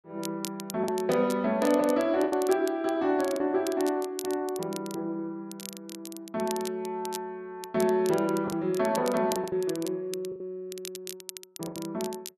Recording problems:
crackle; vinyl, SNR 14 dB
lost packets; 4% of the sound replaced, filled with the last packet

